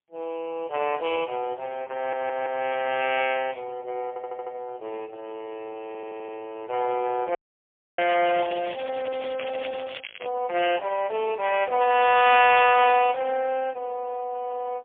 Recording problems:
telephone audio; 280 Hz to 3.3 kHz, AMR-NB, then MP3
stutter; at 2 s, at 4 s and at 6 s
audio cutting out; at 7.5 s for 0.5 s
crackling; from 8 to 10 s; loose cable, SNR 15 dB

